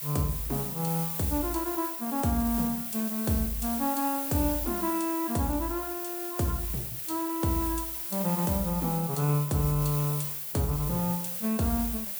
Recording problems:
hiss; SNR 2 dB

